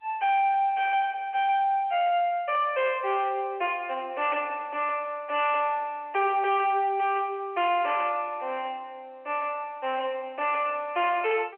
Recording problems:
phone line; 320 Hz to 3.1 kHz, G.711
distortion; hard clipping, signal-to-distortion ratio 10 dB

